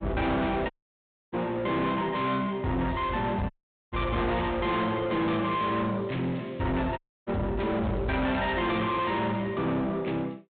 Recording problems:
treble missing; nothing above 3.7 kHz
lossy codec; MP3, log-spectral distance 2 dB
distorted audio; soft clipping, signal-to-distortion ratio 6 dB
dropout; at 0.5 s for 0.5 s, at 3.5 s and at 7 s

